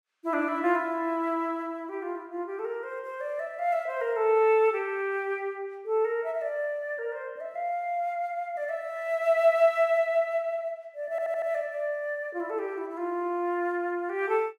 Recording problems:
audio stuttering; at 11 s

